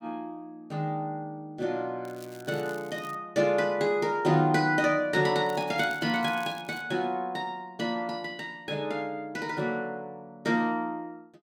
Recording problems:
crackling; from 2 to 3 s and from 5.5 to 7 s; loose cable, SNR 22 dB

